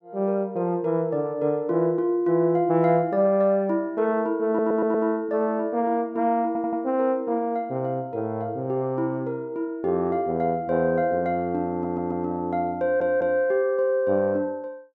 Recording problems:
stutter; 4 times, first at 4.5 s

